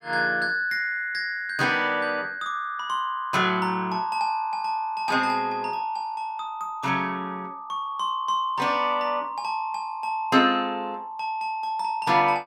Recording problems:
none

